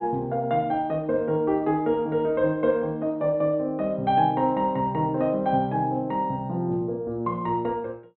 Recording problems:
treble missing; nothing above 4.1 kHz

